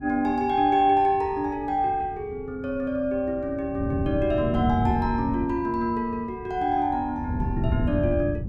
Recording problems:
wind on the microphone; below 180 Hz, SNR 6 dB

